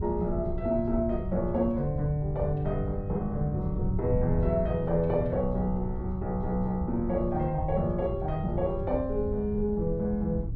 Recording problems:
wind noise; below 120 Hz, SNR 6 dB

